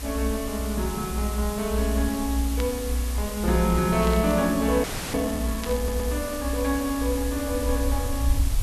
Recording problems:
background hiss; slope -1 dB per octave, SNR 9 dB
rumble; below 64 Hz, strongest tone 60 Hz, SNR 3 dB
burst of static; at 2.5 s, at 4 s and at 5.5 s; peak -5 dB vs average level
frozen audio; at 5 s
stutter; at 6 s

